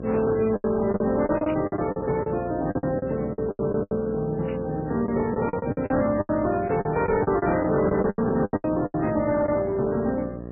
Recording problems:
lossy codec; MP3, log-spectral distance 3 dB, nothing above 2.4 kHz
distortion; hard clipping, uneven, signal-to-distortion ratio 11 dB
mains hum; 60 Hz, harmonics up to 1.1 kHz, SNR 12 dB
packet loss; 15% of the sound replaced, filled with the last packet
burst of static; at 1.5 s, at 4.5 s and at 9 s; peak -11 dB vs average level

